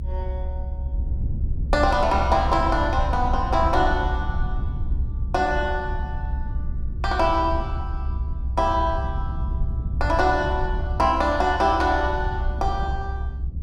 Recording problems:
rumble; below 72 Hz, SNR 5 dB

